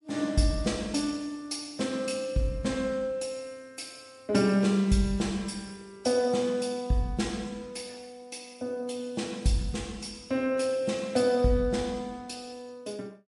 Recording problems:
lossy compression; MP3, log-spectral distance 3 dB

